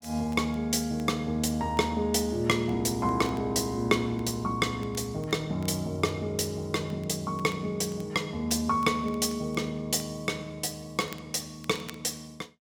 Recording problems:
crackle; vinyl, SNR 25 dB

